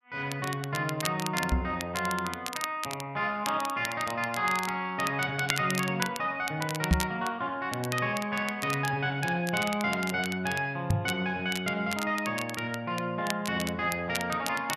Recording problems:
crackling; vinyl, SNR 9 dB
microphone bump; at 1.5 s, at 7 s and at 11 s; peak +9 dB vs average level

